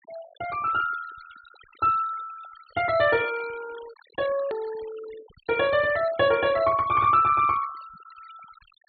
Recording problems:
treble missing; nothing above 4.4 kHz
denoising artefacts; signal-to-artefact ratio 20 dB
edit click; at 4.5 s

